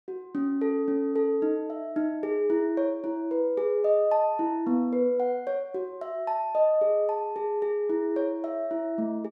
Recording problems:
none

